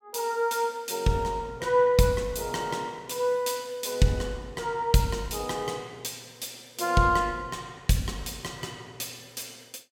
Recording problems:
none

